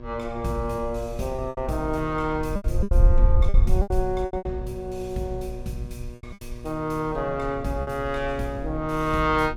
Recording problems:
electrical hum; 60 Hz, harmonics up to 1.7 kHz, SNR 14 dB
wind noise; below 58 Hz, SNR -1 dB
lost packets; 8% of the sound replaced, filled with repeated pitch periods

